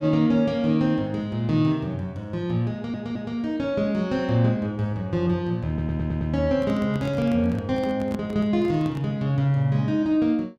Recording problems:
audio stuttering; at 2.5 s and at 5.5 s
microphone handling noise; from 6.5 to 9 s; peak -5 dB vs average level

